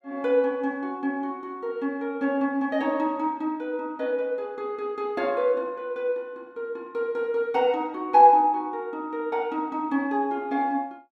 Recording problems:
none

